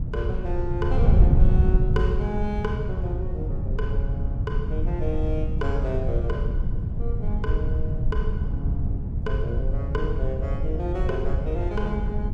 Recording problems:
wind on the microphone; below 96 Hz, SNR -6 dB

